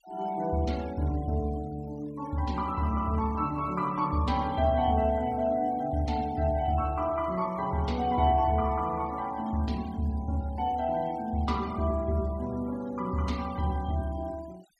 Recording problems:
denoising artefacts; signal-to-artefact ratio 23 dB

